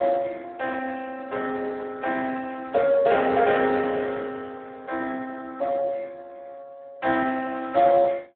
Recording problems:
phone line; 280 Hz to 2.1 kHz, Speex

